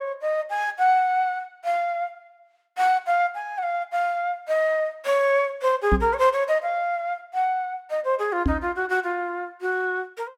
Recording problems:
knock on the microphone; at 6 s and at 8.5 s; peak +6 dB vs average level

